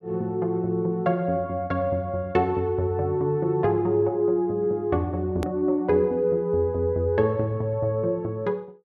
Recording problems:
hard cut with a click; at 5.5 s

